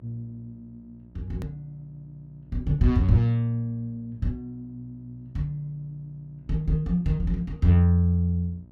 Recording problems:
hum; 60 Hz, harmonics up to 660 Hz, SNR 25 dB
hard cut with a click; at 1.5 s

